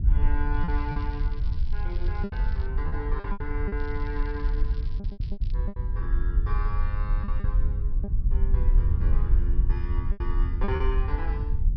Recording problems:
treble cut off; nothing above 5.5 kHz
wind on the microphone; below 62 Hz, SNR -10 dB
packet loss; 7% of the sound replaced, filled with repeated pitch periods
crackling; from 0.5 to 2.5 s and from 4 to 5.5 s; loose cable, SNR 18 dB

